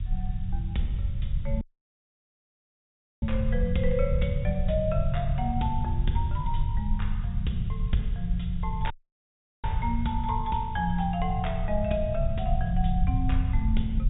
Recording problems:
treble missing; nothing above 4 kHz
hiss; SNR 28 dB
rumble; below 88 Hz, SNR -1 dB
audio cutting out; at 1.5 s for 1.5 s and at 9 s for 0.5 s

